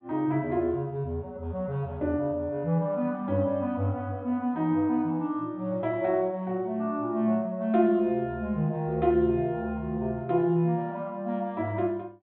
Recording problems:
low-pass filter; nothing above 4 kHz

